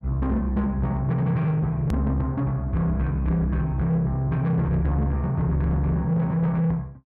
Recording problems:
distortion; soft clipping, signal-to-distortion ratio 10 dB
hard cut with a click; at 2 s

